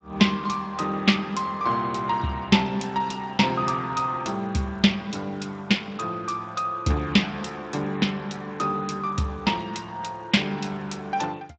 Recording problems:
lossy codec; Speex, log-spectral distance 4 dB, nothing above 7.8 kHz

